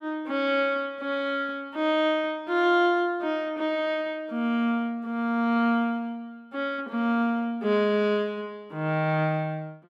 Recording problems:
none

